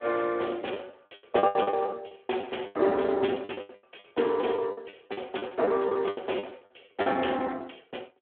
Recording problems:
telephone audio; 300 Hz to 3.4 kHz, Speex
lost packets; 19% of the sound replaced, filled with the last packet

